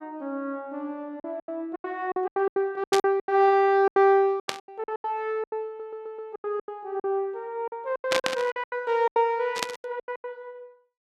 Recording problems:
lost packets; 18% of the sound replaced, filled with silence
burst of static; 4 times, first at 3 s; peak +5 dB vs average level
audio stuttering; at 5.5 s

